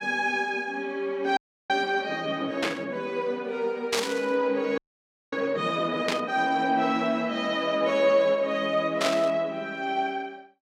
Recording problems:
frozen audio; at 1.5 s and at 5 s for 0.5 s
static burst; 4 times, first at 2.5 s; peak +4 dB vs average level

